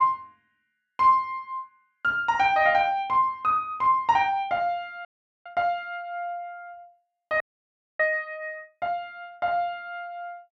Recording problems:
audio freezing; at 5 s and at 7.5 s for 0.5 s

